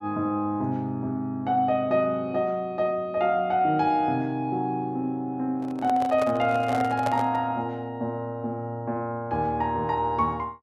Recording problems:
microphone handling noise; from 5.5 to 7.5 s; peak 0 dB vs average level

